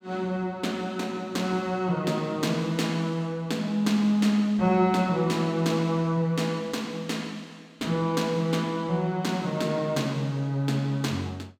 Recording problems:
none

